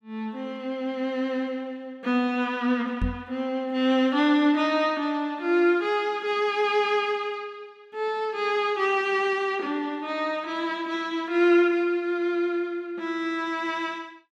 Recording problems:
microphone thump; at 3 s; peak +1 dB vs average level

